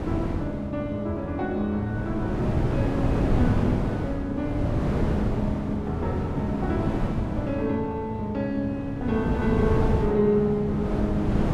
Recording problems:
wind on the microphone; below 340 Hz, SNR 1 dB

